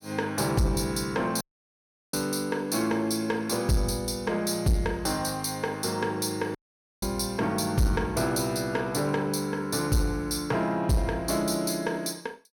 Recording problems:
distorted audio; soft clipping, signal-to-distortion ratio 11 dB
dropout; at 1.5 s for 0.5 s and at 6.5 s

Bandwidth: 17 kHz